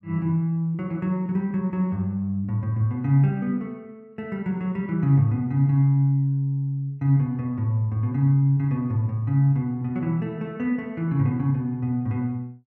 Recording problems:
none

